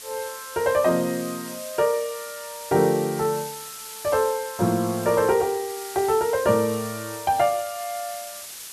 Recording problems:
hiss; slope +2 dB per octave, SNR 12 dB

